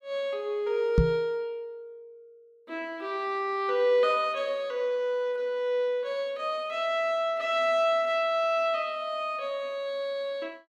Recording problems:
microphone thump; at 1 s; peak +8 dB vs average level

